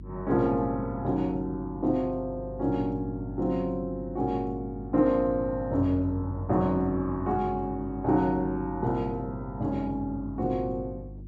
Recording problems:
hum; 50 Hz, harmonics up to 350 Hz, SNR 12 dB

